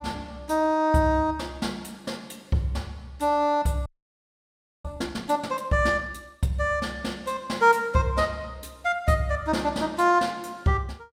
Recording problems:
frozen audio; at 4 s for 1 s

